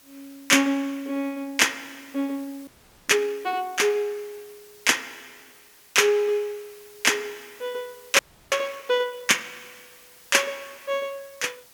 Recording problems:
hiss; slope 0 dB per octave, SNR 25 dB
audio freezing; at 2.5 s and at 8 s

